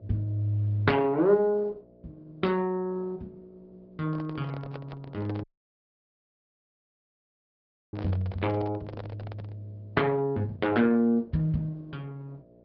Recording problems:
low-pass filter; nothing above 5.5 kHz
codec artefacts; Opus, log-spectral distance 2 dB
hum; 60 Hz, harmonics up to 720 Hz, SNR 27 dB
handling noise; from 4 to 9.5 s; peak -8 dB vs average level
dropout; at 5.5 s for 2.5 s

